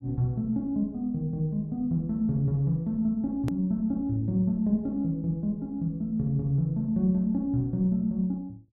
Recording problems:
hard cut with a click; at 3.5 s

